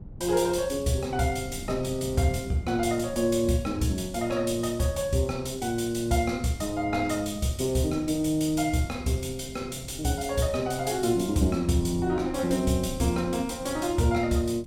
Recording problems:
wind noise; below 180 Hz, SNR 15 dB

